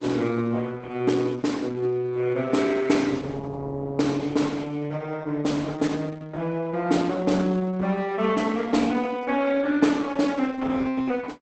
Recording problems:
codec artefacts; Opus, log-spectral distance 3 dB, nothing above 8 kHz

